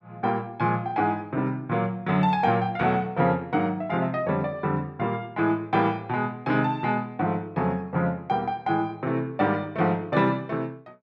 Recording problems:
none

